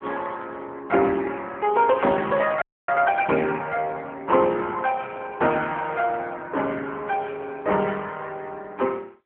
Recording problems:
telephone audio; 220 Hz to 3.3 kHz, AMR-NB
audio freezing; at 2.5 s

